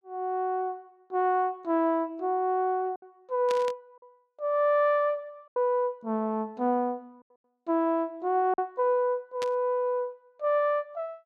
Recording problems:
packet loss; 2% of the sound replaced, filled with silence
static burst; at 3.5 s and at 9.5 s; peak -6 dB vs average level

